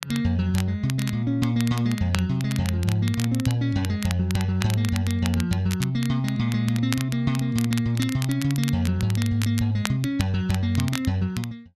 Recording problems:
crackle; vinyl, SNR 12 dB

